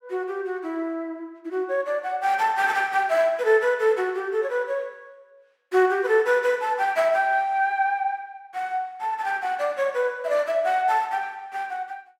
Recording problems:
none

